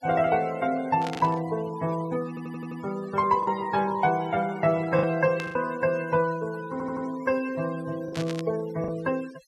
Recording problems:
noise reduction artefacts; signal-to-artefact ratio 18 dB
lost packets; 3% of the sound replaced, filled with the last packet
static burst; at 1 s, at 5.5 s and at 8 s; peak -6 dB vs average level
audio stuttering; at 2.5 s and at 6.5 s

